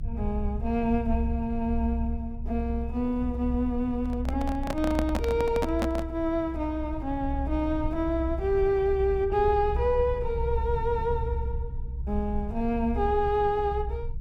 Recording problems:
rumble; below 66 Hz, strongest tone 64 Hz, SNR 6 dB
handling noise; from 4 to 6 s; peak +2 dB vs average level

